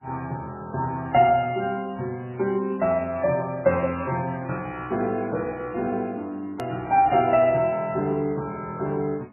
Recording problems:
lossy codec; MP3, log-spectral distance 2 dB, nothing above 2.4 kHz
click at an edit; at 6.5 s

